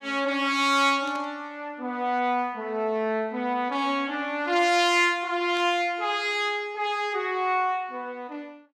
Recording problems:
burst of static; at 1 s and at 5.5 s; peak -14 dB vs average level

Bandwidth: 15 kHz